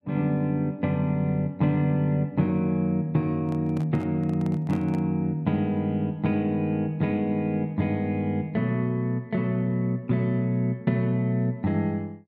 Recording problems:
microphone handling noise; from 3.5 to 5 s; peak -11 dB vs average level

